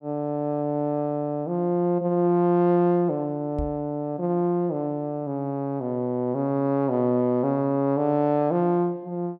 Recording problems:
microphone bump; at 3.5 s; peak -4 dB vs average level

